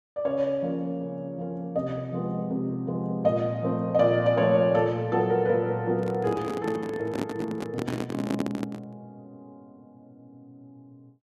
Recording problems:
microphone handling noise; from 6 to 9 s; peak +1 dB vs average level

